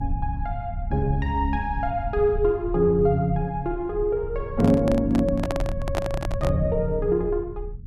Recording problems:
low-frequency rumble; below 96 Hz, strongest tone 36 Hz, SNR 9 dB
handling noise; from 4.5 to 6.5 s; peak 0 dB vs average level

